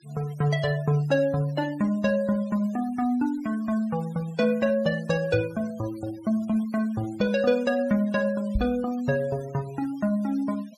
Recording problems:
noise reduction artefacts; signal-to-artefact ratio 23 dB
microphone bump; at 8.5 s; peak +2 dB vs average level

